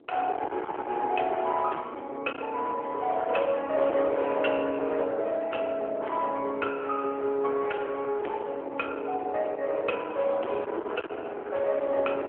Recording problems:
telephone audio; 300 Hz to 3.3 kHz, AMR-NB
distortion; hard clipping, uneven, signal-to-distortion ratio 7 dB
wind noise; below 1 kHz, SNR 14 dB

